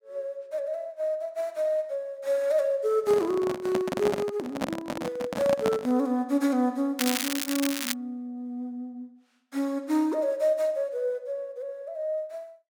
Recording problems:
microphone handling noise; from 3 to 6 s; peak +4 dB vs average level
crackle; at 7 s; loose cable, SNR 2 dB

